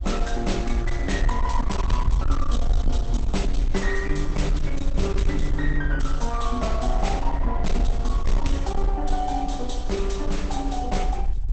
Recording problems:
lossy codec; Opus, log-spectral distance 3 dB, nothing above 8 kHz
distortion; hard clipping, signal-to-distortion ratio 11 dB
rumble; below 50 Hz, SNR -1 dB

